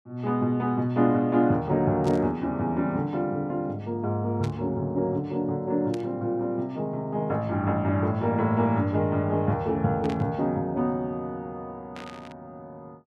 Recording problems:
static burst; 5 times, first at 2 s; peak -11 dB vs average level

